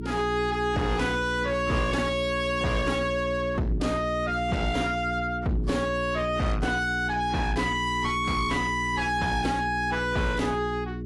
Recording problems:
lossy codec; AAC, log-spectral distance 2 dB, nothing above 11 kHz
distorted audio; soft clipping, signal-to-distortion ratio 5 dB
hum; 60 Hz, harmonics up to 420 Hz, SNR 7 dB

